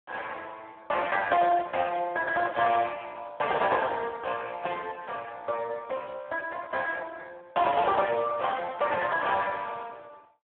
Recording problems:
phone line; 320 Hz to 3.1 kHz, Speex

